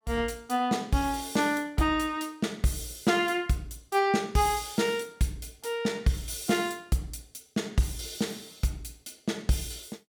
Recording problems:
none

